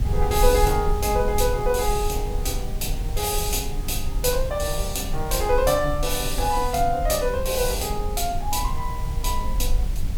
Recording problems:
hiss; SNR 16 dB
rumble; below 58 Hz, SNR 5 dB

